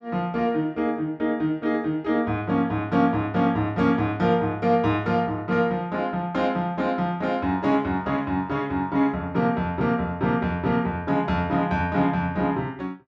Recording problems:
none

